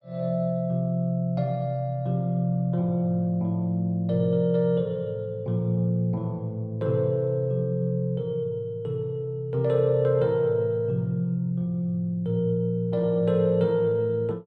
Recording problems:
none

